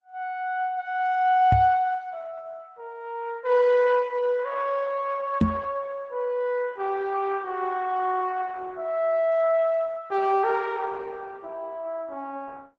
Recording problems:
codec artefacts; Opus, log-spectral distance 2 dB
knock on the microphone; at 1.5 s and at 5.5 s; peak +8 dB vs average level

